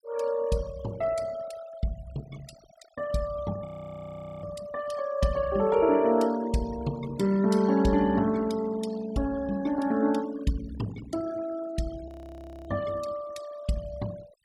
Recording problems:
noise reduction artefacts; signal-to-artefact ratio 18 dB
frozen audio; at 3.5 s for 1 s and at 12 s for 0.5 s

